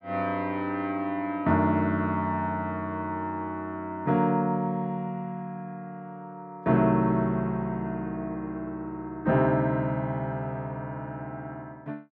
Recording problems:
none

